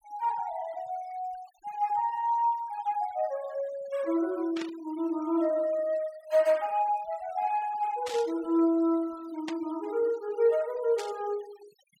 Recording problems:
noise reduction artefacts; signal-to-artefact ratio 23 dB
static burst; 4 times, first at 4.5 s; peak -6 dB vs average level

